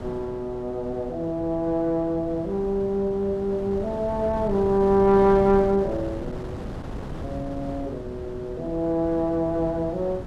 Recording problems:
wind on the microphone; below 390 Hz, SNR 12 dB

